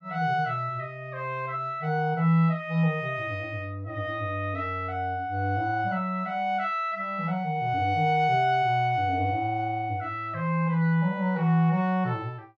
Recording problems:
none

